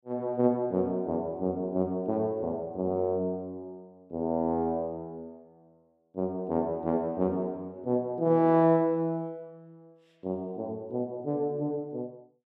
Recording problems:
none

